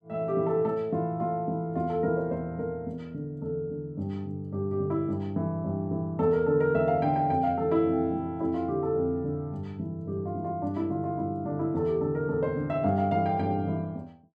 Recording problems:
none

